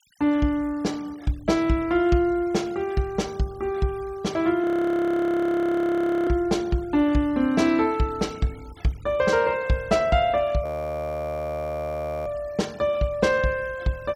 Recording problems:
noise reduction artefacts; signal-to-artefact ratio 25 dB
frozen audio; at 4.5 s for 1.5 s and at 11 s for 1.5 s

